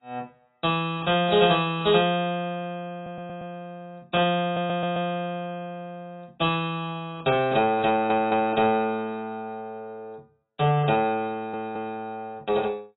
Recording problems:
lossy codec; AAC, log-spectral distance 3 dB, nothing above 3.2 kHz
stutter; 4 times, first at 3 s

